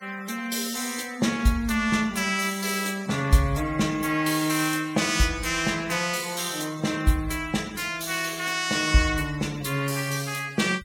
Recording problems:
denoising artefacts; signal-to-artefact ratio 19 dB

